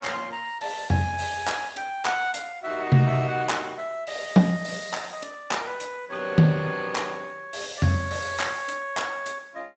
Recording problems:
lossy codec; Speex, log-spectral distance 5 dB, nothing above 7.8 kHz

